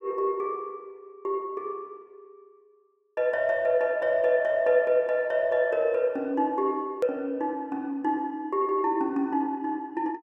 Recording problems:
hard cut with a click; at 7 s

